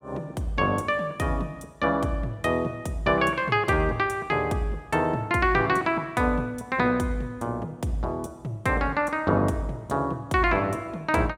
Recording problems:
none

